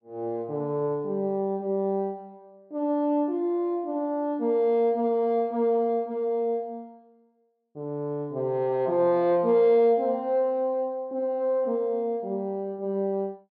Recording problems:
treble missing; nothing above 5.7 kHz

